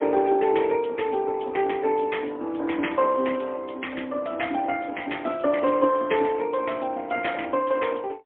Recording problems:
telephone audio; 220 Hz to 3.4 kHz, AMR-NB, then MP3

